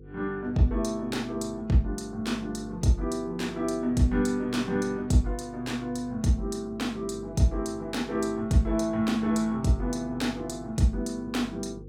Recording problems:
electrical hum; 50 Hz, harmonics up to 500 Hz, SNR 18 dB

